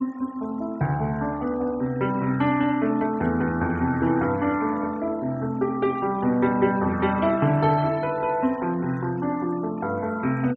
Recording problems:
treble cut off; nothing above 7.9 kHz
noise reduction artefacts; signal-to-artefact ratio 22 dB

